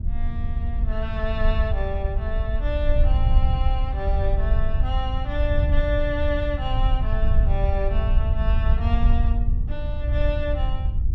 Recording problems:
wind noise; below 68 Hz, SNR -6 dB

